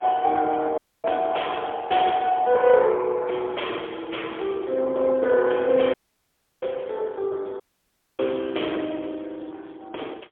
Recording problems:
phone line; 280 Hz to 3.4 kHz, AMR-NB, then MP3
dropout; at 1 s, at 6 s for 0.5 s and at 7.5 s for 0.5 s

